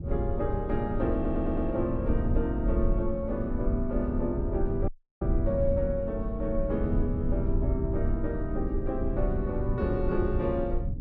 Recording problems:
rumble; below 94 Hz, SNR 1 dB
audio stuttering; at 1 s
dropout; at 5 s

